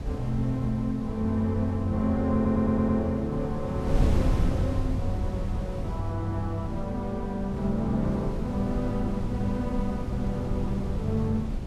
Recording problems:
wind noise; below 150 Hz, SNR 4 dB
audio stuttering; at 2.5 s

